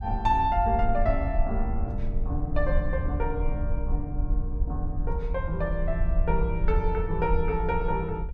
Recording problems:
rumble; below 60 Hz, SNR 1 dB

